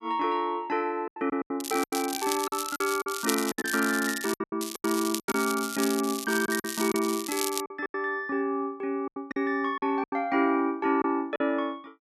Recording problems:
lost packets; 11% of the sound replaced, filled with silence
crackling; from 1.5 to 4.5 s and from 4.5 to 7.5 s; loose cable, SNR 6 dB

